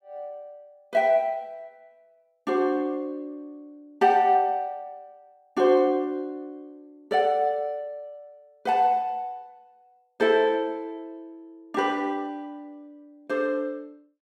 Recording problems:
none

